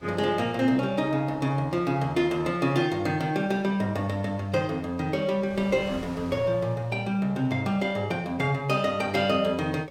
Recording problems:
wind on the microphone; below 1.3 kHz, SNR 23 dB

